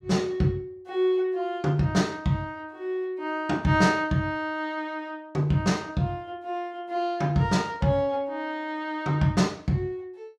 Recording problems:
none

